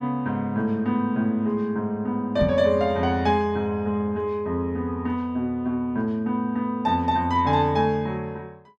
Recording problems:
microphone thump; at 2.5 s; peak +1 dB vs average level

